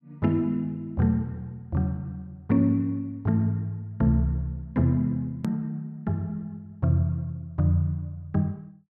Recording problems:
click at an edit; at 5.5 s

